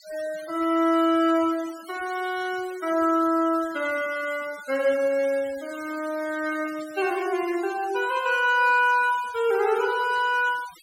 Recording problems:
noise reduction artefacts; signal-to-artefact ratio 20 dB

